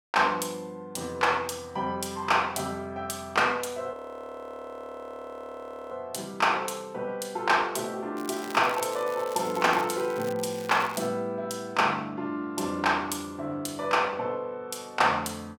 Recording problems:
frozen audio; at 4 s for 2 s
crackle; from 8 to 11 s; loose cable, SNR 17 dB

